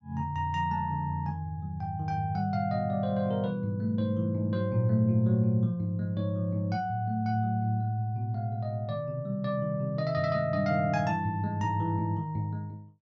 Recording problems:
low-pass filter; nothing above 8 kHz

